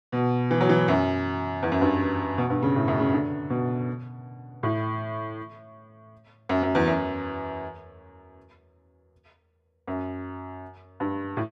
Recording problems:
none

